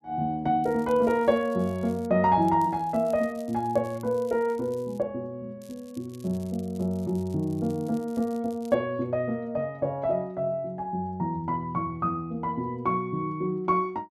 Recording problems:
crackling; from 0.5 to 2 s, from 2.5 to 5 s and from 5.5 to 9 s; loose cable, SNR 27 dB

